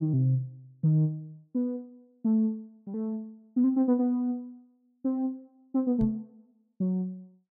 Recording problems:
microphone bump; at 6 s; peak -1 dB vs average level

